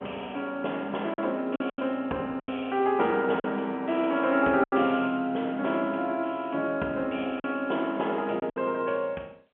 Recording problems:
phone line; 220 Hz to 3.2 kHz, G.711
lost packets; 5% of the sound replaced, filled with silence

